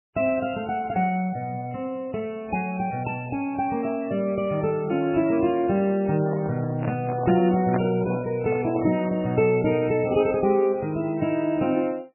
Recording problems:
codec artefacts; MP3, log-spectral distance 3 dB, nothing above 2.5 kHz
crackling; from 4 to 5.5 s and from 9.5 to 11 s; loose cable, SNR 30 dB
handling noise; from 6 to 9 s; peak 0 dB vs average level

